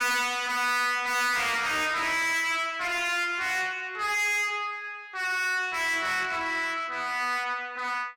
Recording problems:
distortion; soft clipping, signal-to-distortion ratio 6 dB

